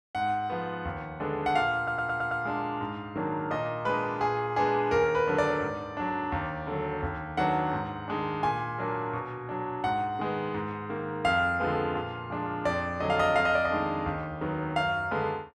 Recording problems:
stutter; at 2 s

